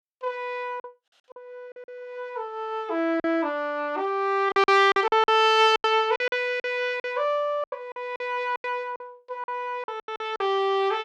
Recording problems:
packet loss; 11% of the sound replaced, filled with silence

